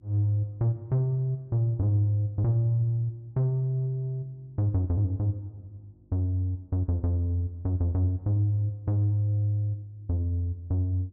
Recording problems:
hum; 50 Hz, harmonics up to 350 Hz, SNR 34 dB

